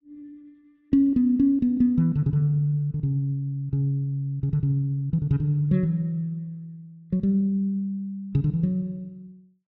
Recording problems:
none

